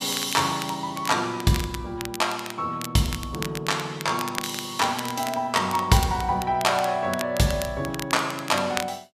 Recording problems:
crackle; vinyl, SNR 11 dB

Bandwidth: 14.5 kHz